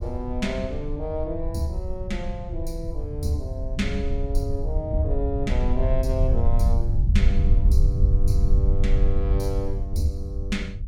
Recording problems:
low-frequency rumble; below 72 Hz, SNR -5 dB

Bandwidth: 18 kHz